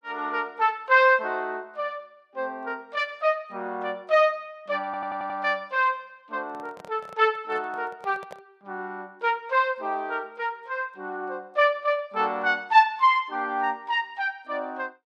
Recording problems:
stutter; at 5 s
handling noise; from 6.5 to 8.5 s; peak -11 dB vs average level

